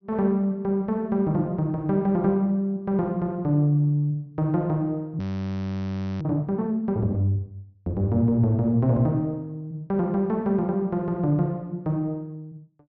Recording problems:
treble cut off; nothing above 6 kHz
audio freezing; at 5 s for 1 s

